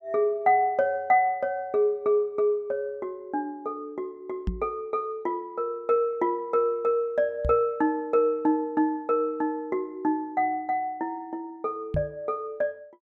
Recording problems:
microphone thump; at 4.5 s, at 7.5 s and at 12 s; peak +1 dB vs average level

